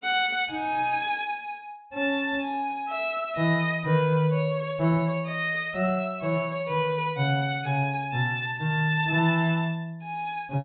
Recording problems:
treble missing; nothing above 4 kHz

